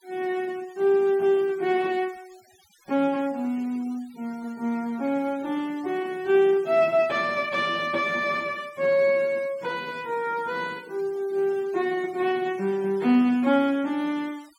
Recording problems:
noise reduction artefacts; signal-to-artefact ratio 25 dB

